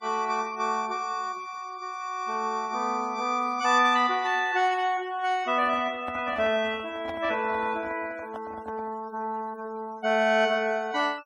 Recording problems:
noise reduction artefacts; signal-to-artefact ratio 25 dB
microphone handling noise; from 5.5 to 9 s; peak -7 dB vs average level

